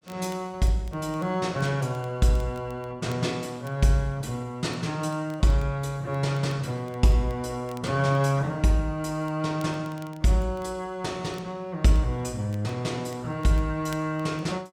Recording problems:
crackle; vinyl, SNR 28 dB

